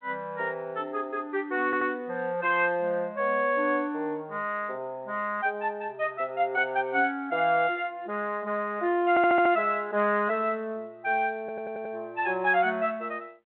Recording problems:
telephone audio; 240 Hz to 3.7 kHz, G.726
stutter; at 1.5 s, at 9 s and at 11 s

